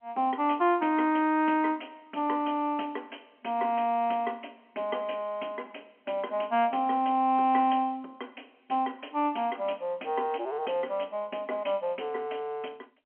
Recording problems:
phone line; 220 Hz to 3.2 kHz, G.711

